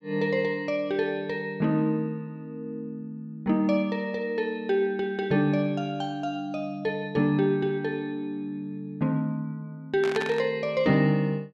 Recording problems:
burst of static; at 10 s; peak -1 dB vs average level

